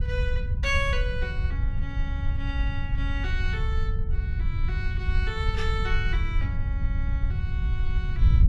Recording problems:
wind noise; below 80 Hz, SNR -5 dB

